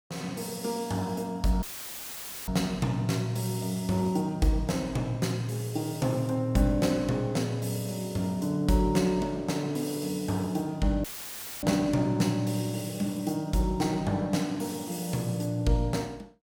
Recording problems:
audio cutting out; at 1.5 s for 1 s and at 11 s for 0.5 s; filled with static

